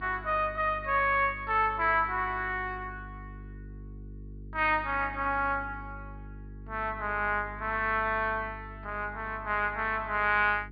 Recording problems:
treble missing; nothing above 4.8 kHz
electrical hum; 50 Hz, harmonics up to 450 Hz, SNR 17 dB

